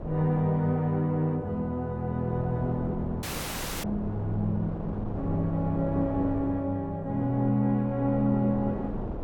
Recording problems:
wind noise; below 440 Hz, SNR 10 dB
dropout; at 3 s for 0.5 s

